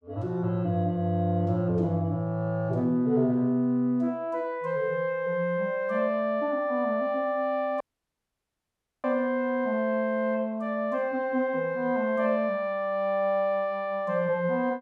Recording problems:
dropout; at 8 s for 1 s

